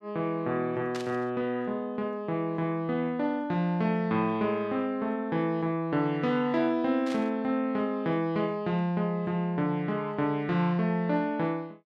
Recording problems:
static burst; at 1 s and at 7 s; peak -7 dB vs average level

